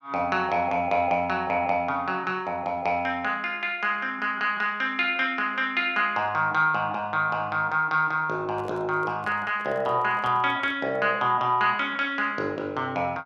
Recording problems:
handling noise; from 8.5 to 11 s; peak -12 dB vs average level

